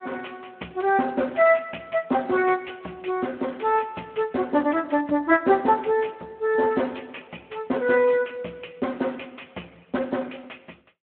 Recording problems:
telephone audio; 190 Hz to 2.9 kHz, Speex

